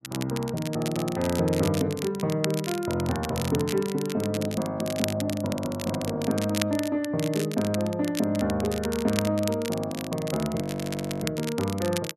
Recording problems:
crackle; vinyl, SNR 10 dB
audio freezing; at 11 s for 0.5 s

